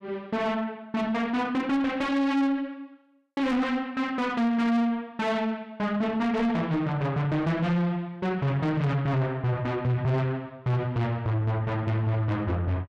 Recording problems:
distortion; soft clipping, signal-to-distortion ratio 8 dB

